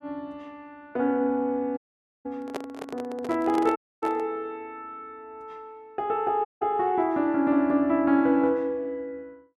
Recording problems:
dropout; at 2 s, at 4 s and at 6.5 s
microphone handling noise; from 2.5 to 4.5 s; peak -3 dB vs average level

